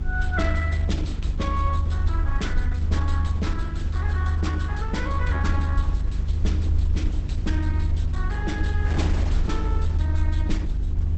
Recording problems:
lossy compression; Opus, log-spectral distance 2 dB, nothing above 8.2 kHz
hum; 50 Hz, harmonics up to 350 Hz, SNR 0 dB
rumble; below 80 Hz, strongest tone 78 Hz, SNR -6 dB
wind noise; below 820 Hz, SNR 11 dB

